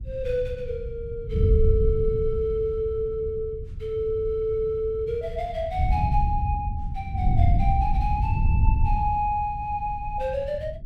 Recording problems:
wind on the microphone; below 94 Hz, SNR 0 dB

